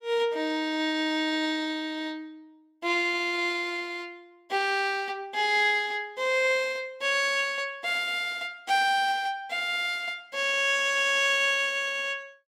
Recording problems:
none

